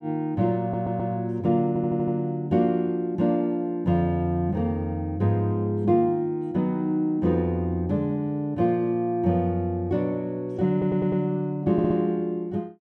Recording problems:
audio stuttering; 4 times, first at 0.5 s

